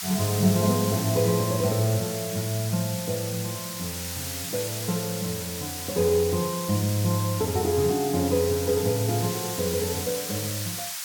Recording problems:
hiss; SNR 6 dB

